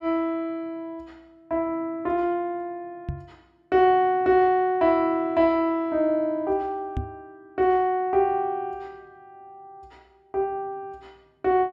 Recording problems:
microphone thump; at 3 s and at 7 s; peak -2 dB vs average level

